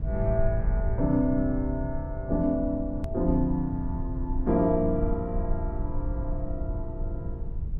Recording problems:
rumble; below 74 Hz, SNR 5 dB
click at an edit; at 3 s

